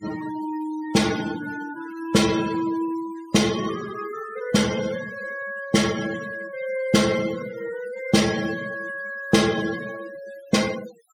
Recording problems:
denoising artefacts; signal-to-artefact ratio 13 dB

